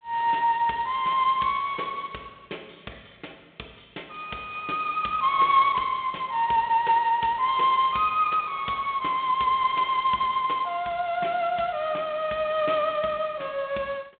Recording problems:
phone line; 190 Hz to 3.6 kHz, G.726

